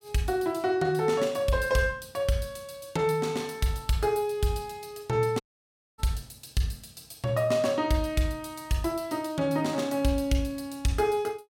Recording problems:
audio cutting out; at 5.5 s for 0.5 s

